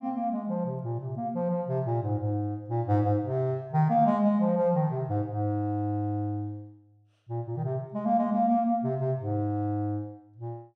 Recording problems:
none

